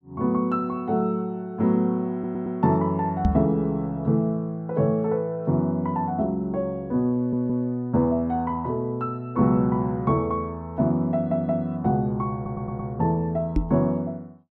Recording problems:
stutter; 4 times, first at 2 s
microphone bump; at 3.5 s and at 14 s; peak +6 dB vs average level

